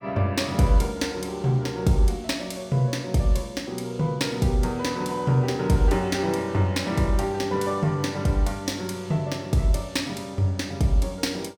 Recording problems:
none

